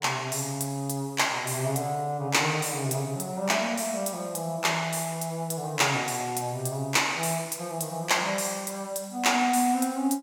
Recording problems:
none

